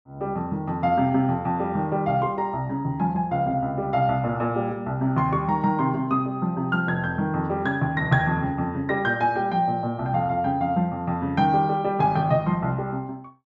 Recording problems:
low-pass filter; nothing above 8 kHz

